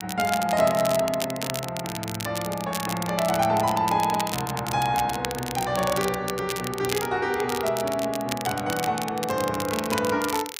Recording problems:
crackling; vinyl, SNR 8 dB

